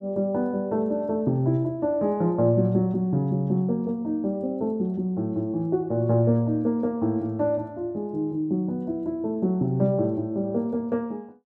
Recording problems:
none

